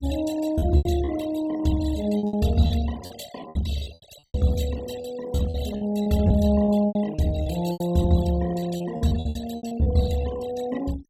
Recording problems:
noise reduction artefacts; signal-to-artefact ratio 16 dB
packet loss; 14% of the sound replaced, filled with repeated pitch periods

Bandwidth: 16 kHz